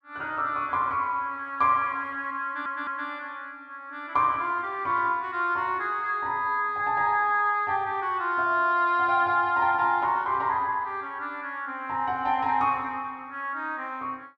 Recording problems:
stutter; at 2.5 s

